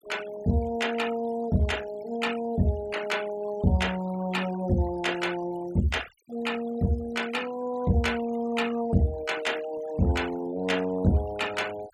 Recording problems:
noise reduction artefacts; signal-to-artefact ratio 16 dB

